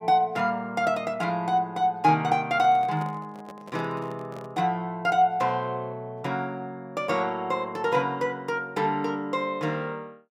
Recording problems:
handling noise; from 2.5 to 4.5 s; peak -11 dB vs average level

